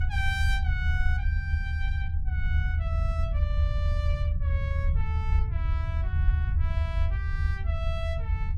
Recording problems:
low-frequency rumble; below 80 Hz, SNR -9 dB

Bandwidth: 16 kHz